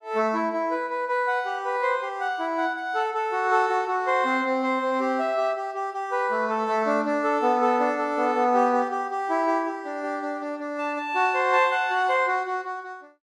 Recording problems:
none

